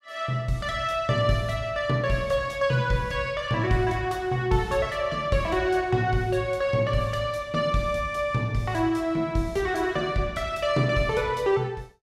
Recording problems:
none

